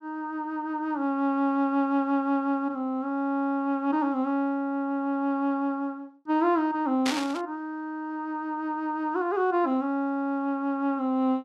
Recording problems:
static burst; at 7 s; peak +2 dB vs average level

